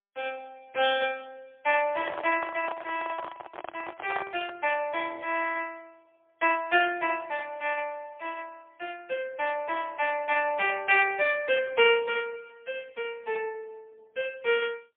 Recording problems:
telephone audio; 300 Hz to 3.4 kHz, AMR-NB, then MP3
microphone handling noise; from 2 to 4.5 s; peak -3 dB vs average level

